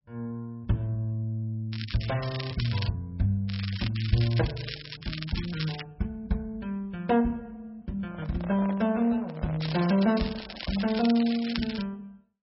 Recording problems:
codec artefacts; MP3, log-spectral distance 6 dB, nothing above 5.3 kHz
crackle; from 1.5 to 3 s, from 3.5 to 6 s and from 9.5 to 12 s; loose cable, SNR 10 dB
handling noise; from 8 to 11 s; peak -6 dB vs average level

